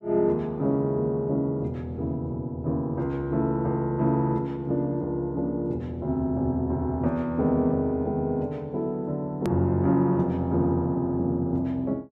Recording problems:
click at an edit; at 9.5 s

